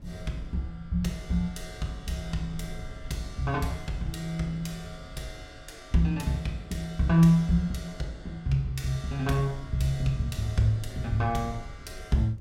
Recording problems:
wind on the microphone; below 92 Hz, SNR 17 dB

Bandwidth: 16.5 kHz